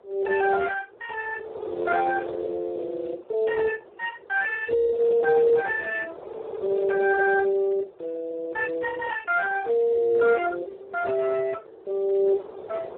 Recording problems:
telephone audio; 340 Hz to 2.1 kHz, Speex
wind on the microphone; below 610 Hz, SNR 17 dB

